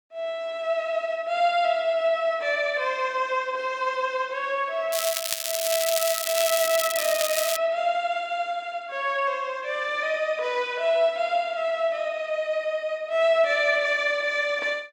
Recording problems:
crackle; from 5 to 7.5 s; loose cable, SNR 2 dB

